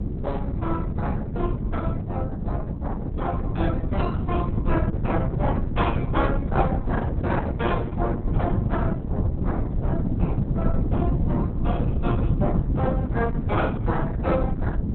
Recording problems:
codec artefacts; Opus, log-spectral distance 2 dB, nothing above 3.6 kHz
wind on the microphone; below 200 Hz, SNR -5 dB

